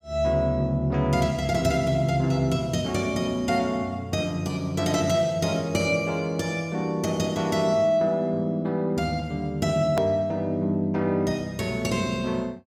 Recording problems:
hard cut with a click; at 10 s

